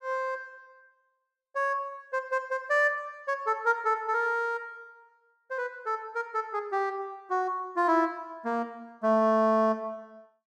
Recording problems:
none

